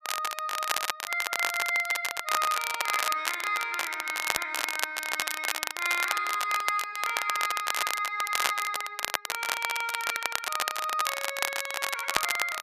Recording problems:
crackle; vinyl, SNR 1 dB

